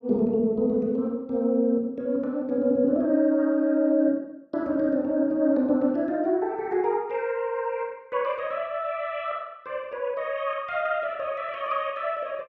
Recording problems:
none

